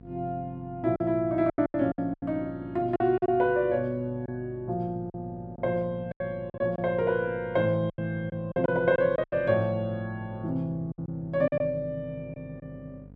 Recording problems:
hum; 50 Hz, harmonics up to 750 Hz, SNR 21 dB
lost packets; 9% of the sound replaced, filled with silence

